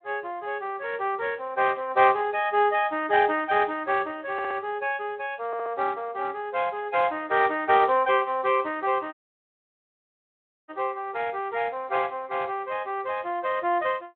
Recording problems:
phone line; 260 Hz to 3.5 kHz, Speex
audio stuttering; at 4.5 s and at 5.5 s
audio cutting out; at 9 s for 1.5 s

